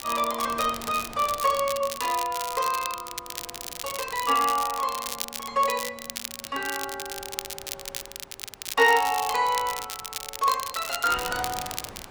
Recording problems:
wind on the microphone; below 1.7 kHz, SNR 21 dB
crackling; vinyl, SNR 8 dB

